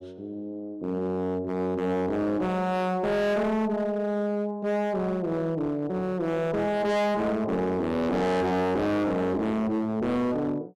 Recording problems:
distorted audio; hard clipping, signal-to-distortion ratio 6 dB

